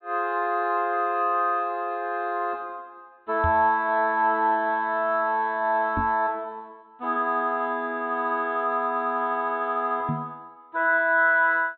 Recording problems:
low-pass filter; nothing above 4 kHz
microphone bump; at 3.5 s, at 6 s and at 10 s; peak -1 dB vs average level

